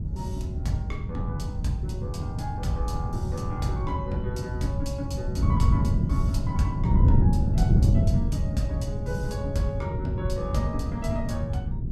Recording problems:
wind noise; below 150 Hz, SNR -6 dB

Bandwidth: 16 kHz